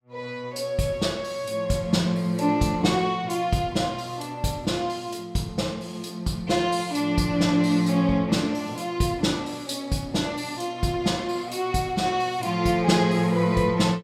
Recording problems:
none

